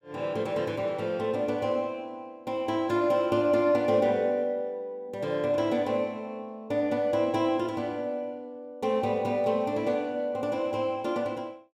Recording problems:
none

